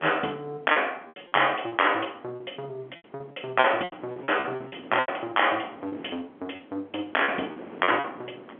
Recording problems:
phone line; 220 Hz to 3.4 kHz, G.711
wind on the microphone; below 710 Hz, SNR 19 dB
lost packets; 12% of the sound replaced, filled with repeated pitch periods

